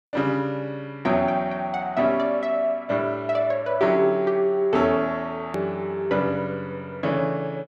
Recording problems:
click at an edit; at 5.5 s

